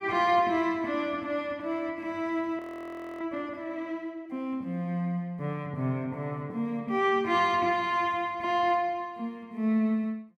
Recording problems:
frozen audio; at 2.5 s for 0.5 s

